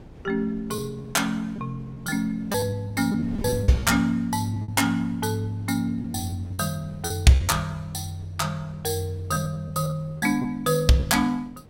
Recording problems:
wind noise; below 300 Hz, SNR 20 dB
lost packets; 8% of the sound replaced, filled with repeated pitch periods

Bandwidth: 16.5 kHz